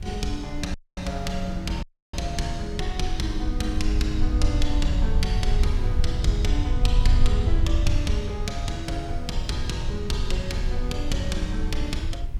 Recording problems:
hiss; SNR 28 dB
rumble; below 64 Hz, SNR -2 dB
dropout; at 0.5 s and at 2 s

